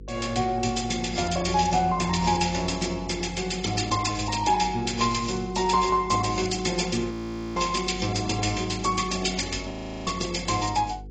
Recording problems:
codec artefacts; AAC, log-spectral distance 7 dB, nothing above 7.3 kHz
electrical hum; 50 Hz, harmonics up to 500 Hz, SNR 16 dB
audio freezing; at 7 s and at 9.5 s

